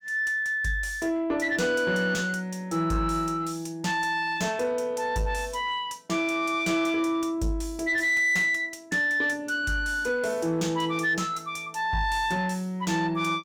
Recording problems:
distorted audio; soft clipping, signal-to-distortion ratio 11 dB

